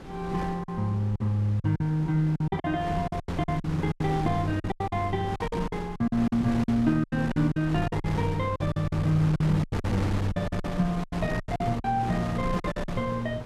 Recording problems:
wind on the microphone; below 540 Hz, SNR 9 dB
lost packets; 15% of the sound replaced, filled with silence

